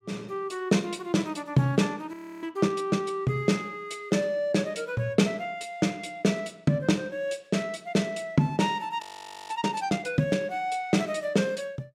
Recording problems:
frozen audio; at 2 s and at 9 s

